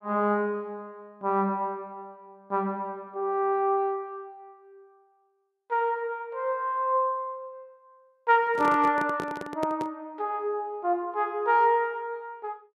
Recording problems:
microphone handling noise; from 8.5 to 10 s; peak -2 dB vs average level

